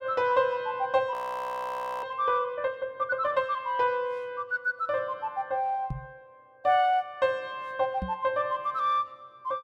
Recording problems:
frozen audio; at 1 s for 1 s
knock on the microphone; at 6 s and at 8 s; peak -2 dB vs average level

